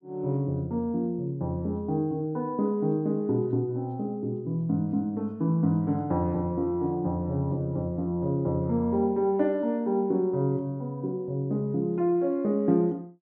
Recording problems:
none

